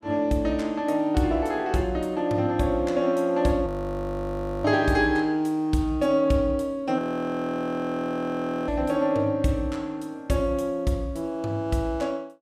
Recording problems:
frozen audio; at 3.5 s for 1 s and at 7 s for 1.5 s

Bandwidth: 15.5 kHz